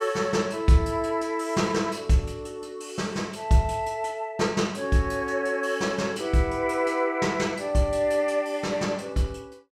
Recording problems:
none

